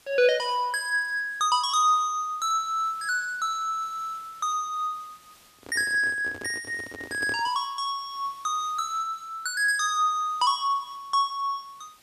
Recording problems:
background hiss; slope 0 dB per octave, SNR 28 dB
microphone handling noise; from 5.5 to 7.5 s; peak -8 dB vs average level

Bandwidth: 14.5 kHz